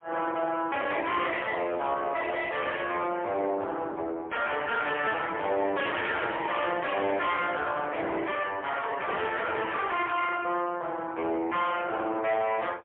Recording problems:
phone line; 190 Hz to 3.5 kHz, AMR-NB, then MP3
distorted audio; soft clipping, signal-to-distortion ratio 10 dB

